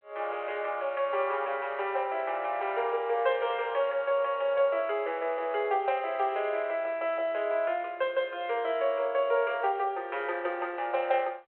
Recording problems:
telephone audio; 370 Hz to 3.2 kHz, G.726

